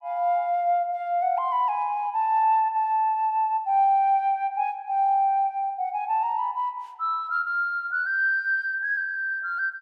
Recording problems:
none

